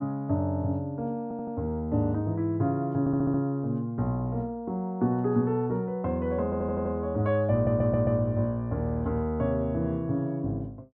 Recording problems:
audio stuttering; 4 times, first at 1 s

